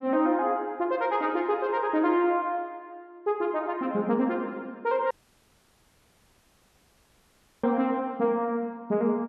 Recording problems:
audio cutting out; at 5 s for 2.5 s

